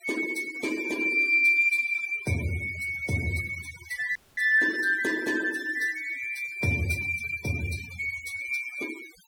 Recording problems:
denoising artefacts; signal-to-artefact ratio 18 dB
audio freezing; at 4 s

